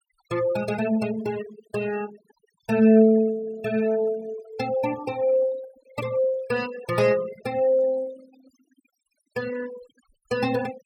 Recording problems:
denoising artefacts; signal-to-artefact ratio 18 dB

